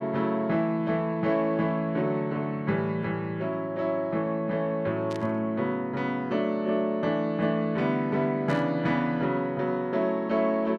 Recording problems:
static burst; at 5 s and at 8.5 s; peak -12 dB vs average level

